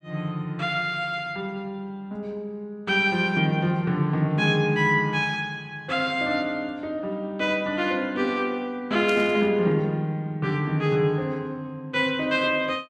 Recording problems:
static burst; at 9 s; peak -8 dB vs average level

